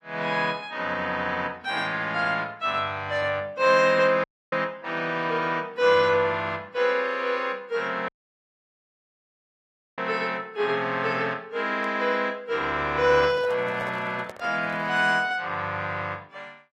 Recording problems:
lossy compression; AAC, log-spectral distance 2 dB
dropout; at 4 s and at 8 s for 2 s
microphone handling noise; from 13 to 15 s; peak -10 dB vs average level

